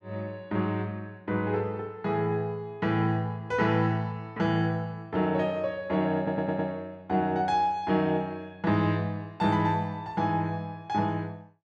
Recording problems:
audio stuttering; at 6 s

